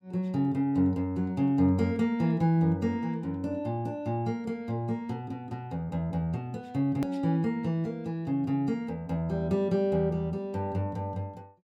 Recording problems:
hard cut with a click; at 7 s

